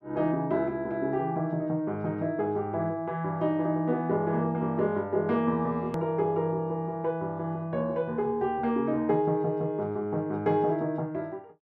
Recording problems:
edit click; at 6 s

